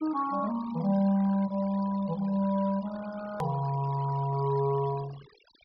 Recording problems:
treble missing; nothing above 5.5 kHz
noise reduction artefacts; signal-to-artefact ratio 19 dB
hard cut with a click; at 3.5 s

